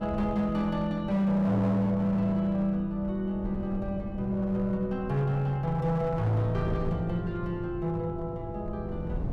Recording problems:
distorted audio; hard clipping, uneven, signal-to-distortion ratio 12 dB
wind noise; below 170 Hz, SNR 12 dB

